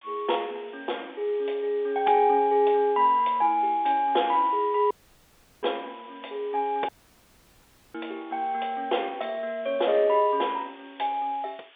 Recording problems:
telephone audio; 320 Hz to 3.6 kHz, G.711
hiss; SNR 27 dB
audio cutting out; at 5 s for 0.5 s and at 7 s for 1 s

